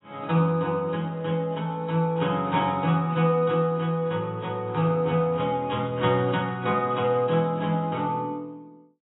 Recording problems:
lossy codec; AAC, log-spectral distance 2 dB, nothing above 3.7 kHz

